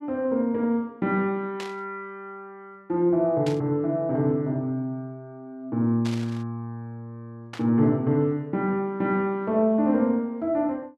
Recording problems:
static burst; 4 times, first at 1.5 s; peak -8 dB vs average level

